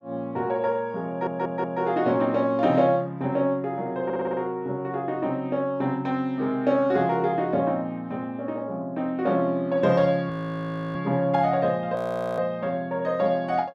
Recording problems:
audio stuttering; at 1 s and at 4 s
audio freezing; at 10 s for 0.5 s and at 12 s

